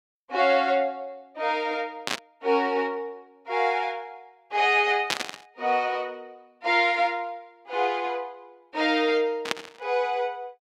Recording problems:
burst of static; at 2 s, at 5 s and at 9.5 s; peak +4 dB vs average level

